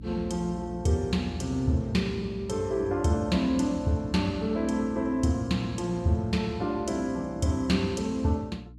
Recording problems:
hum; 60 Hz, harmonics up to 300 Hz, SNR 17 dB

